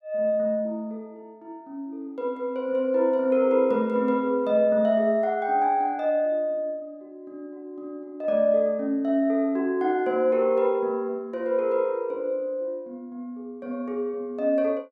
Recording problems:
none

